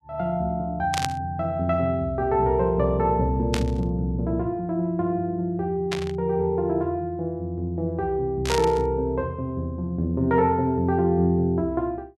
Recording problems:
static burst; 4 times, first at 1 s; peak +1 dB vs average level

